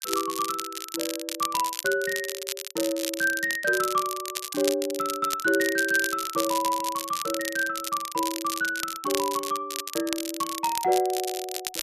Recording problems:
crackle; vinyl, SNR 6 dB

